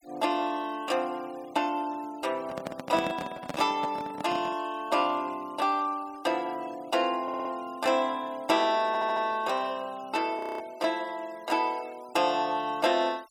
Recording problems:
noise reduction artefacts; signal-to-artefact ratio 23 dB
microphone handling noise; from 2.5 to 4.5 s; peak -1 dB vs average level
audio stuttering; at 7 s and at 9 s
audio freezing; at 10 s

